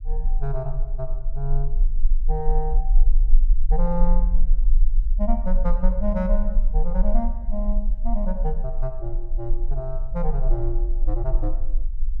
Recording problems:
low-frequency rumble; below 34 Hz, strongest tone 18 Hz, SNR -5 dB

